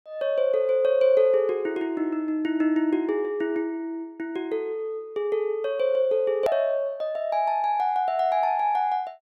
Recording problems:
hard cut with a click; at 6.5 s

